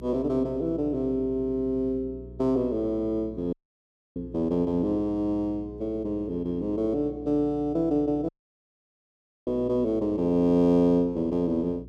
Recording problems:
electrical hum; 60 Hz, harmonics up to 420 Hz, SNR 18 dB
dropout; at 3.5 s for 0.5 s and at 8.5 s for 1 s

